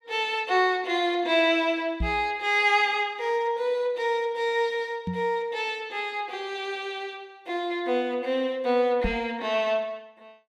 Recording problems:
knock on the microphone; at 2 s, at 5 s and at 9 s; peak 0 dB vs average level

